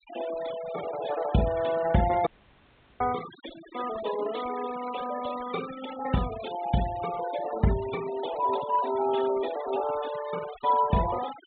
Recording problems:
treble cut off; nothing above 4 kHz
noise reduction artefacts; signal-to-artefact ratio 13 dB
audio cutting out; at 2.5 s for 0.5 s

